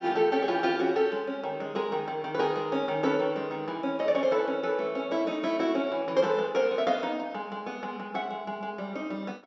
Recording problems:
treble missing; nothing above 7.5 kHz

